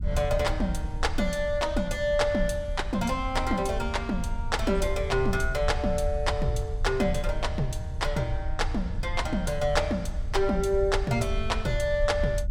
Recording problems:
rumble; below 70 Hz, SNR 6 dB

